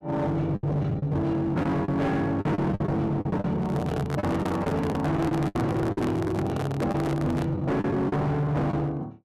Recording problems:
distorted audio; hard clipping, signal-to-distortion ratio 7 dB
lost packets; 9% of the sound replaced, filled with the last packet
handling noise; from 3.5 to 7.5 s; peak -1 dB vs average level

